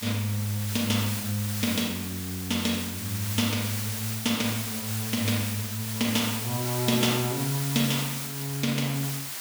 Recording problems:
hiss; slope +1 dB per octave, SNR 4 dB

